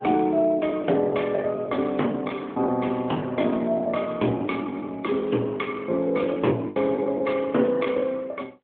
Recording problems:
telephone audio; 190 Hz to 3.4 kHz, AMR-NB
packet loss; 11% of the sound replaced, filled with the last packet

